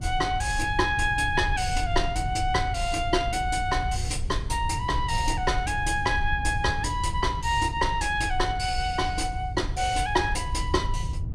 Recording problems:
low-frequency rumble; below 90 Hz, SNR 6 dB

